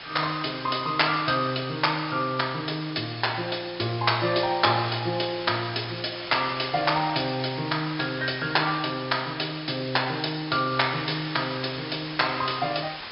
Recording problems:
treble cut off; nothing above 5.3 kHz
hiss; SNR 12 dB

